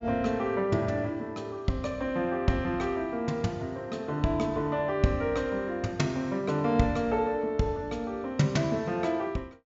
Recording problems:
treble missing; nothing above 7.3 kHz

